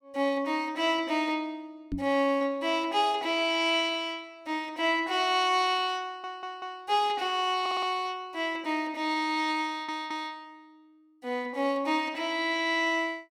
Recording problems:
knock on the microphone; at 2 s; peak -1 dB vs average level
audio stuttering; at 6 s, at 7.5 s and at 9.5 s

